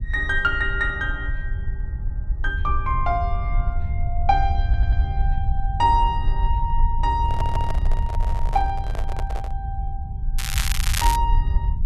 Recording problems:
rumble; below 68 Hz, SNR 1 dB
audio stuttering; at 4.5 s and at 7.5 s
handling noise; from 7 to 9.5 s; peak -4 dB vs average level
crackle; at 10 s; loose cable, SNR 2 dB

